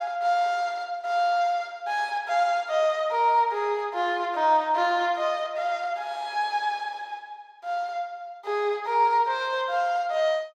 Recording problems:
none

